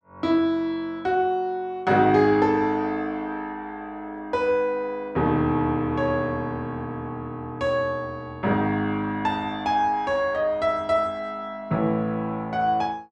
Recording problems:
none

